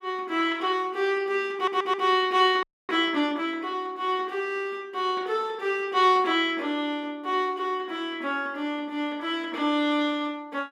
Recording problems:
stutter; at 1.5 s
audio freezing; at 2.5 s

